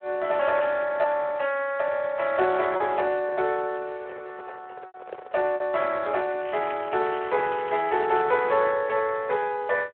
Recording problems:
telephone audio; 320 Hz to 2.6 kHz, Speex
packet loss; 2% of the sound replaced, filled with repeated pitch periods
microphone handling noise; from 2.5 to 5.5 s; peak -8 dB vs average level
crackle; from 6.5 to 8 s; loose cable, SNR 17 dB

